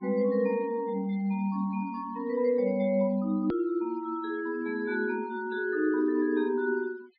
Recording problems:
treble missing; nothing above 5 kHz
noise reduction artefacts; signal-to-artefact ratio 28 dB
hard cut with a click; at 3.5 s

